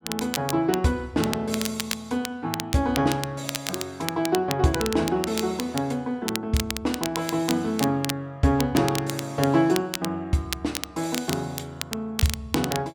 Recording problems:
crackle; vinyl, SNR 7 dB

